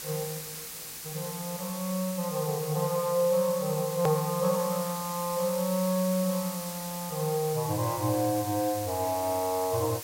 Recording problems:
background hiss; slope +1 dB per octave, SNR 8 dB
click at an edit; at 4 s

